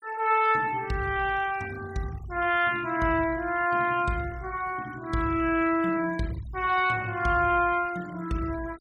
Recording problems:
denoising artefacts; signal-to-artefact ratio 20 dB

